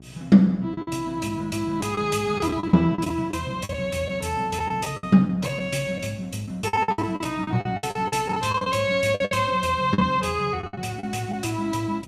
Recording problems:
hum; 60 Hz, harmonics up to 780 Hz, SNR 22 dB
lost packets; 11% of the sound replaced, filled with the last packet

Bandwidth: 14.5 kHz